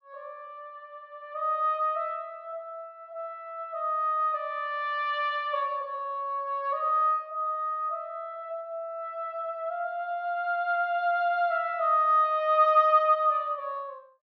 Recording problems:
none

